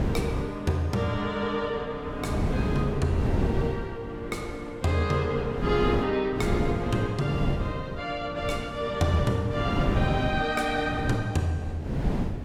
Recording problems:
wind on the microphone; below 270 Hz, SNR 3 dB

